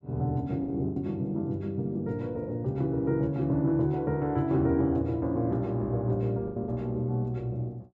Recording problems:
lost packets; 4% of the sound replaced, filled with the last packet

